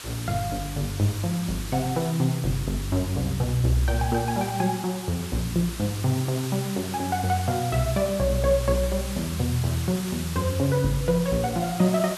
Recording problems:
background hiss; SNR 11 dB

